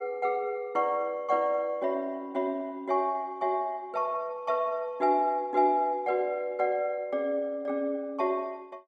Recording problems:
none

